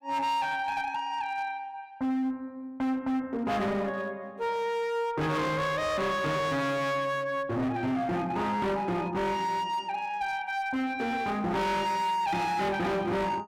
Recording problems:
distortion; hard clipping, signal-to-distortion ratio 8 dB

